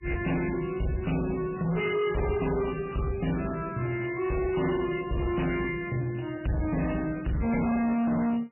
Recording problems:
lossy codec; MP3, log-spectral distance 6 dB, nothing above 2.9 kHz
distorted audio; soft clipping, signal-to-distortion ratio 7 dB

